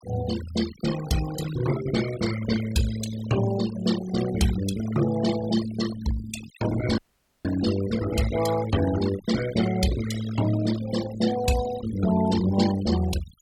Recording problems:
noise reduction artefacts; signal-to-artefact ratio 10 dB
audio cutting out; at 7 s

